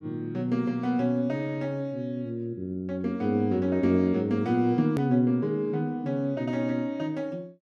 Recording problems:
click at an edit; at 5 s

